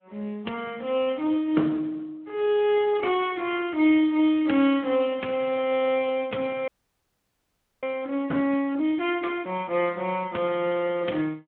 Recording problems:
phone line; 190 Hz to 3.4 kHz, Speex
frozen audio; at 6.5 s for 1 s

